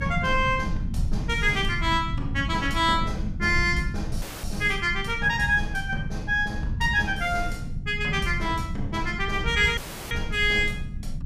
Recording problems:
rumble; below 140 Hz, strongest tone 22 Hz, SNR 8 dB
dropout; at 4 s and at 10 s

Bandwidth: 15 kHz